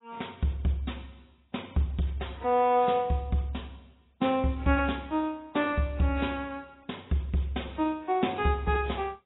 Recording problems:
lossy codec; AAC, log-spectral distance 4 dB, nothing above 3.8 kHz

